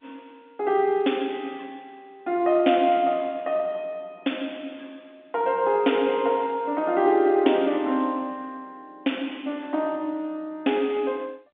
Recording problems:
phone line; 190 Hz to 3.6 kHz, G.711

